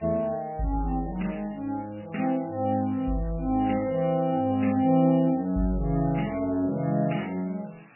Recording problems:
lossy codec; MP3, log-spectral distance 5 dB, nothing above 2.9 kHz
background hiss; SNR 29 dB

